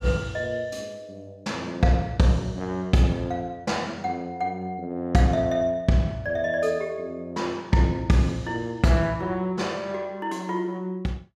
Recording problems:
none

